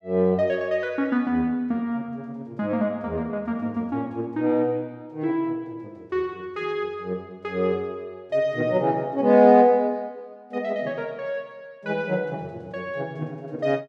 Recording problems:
none

